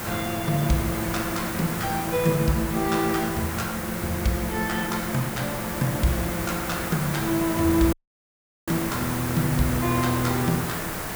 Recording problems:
hiss; SNR 4 dB
dropout; at 8 s for 1 s

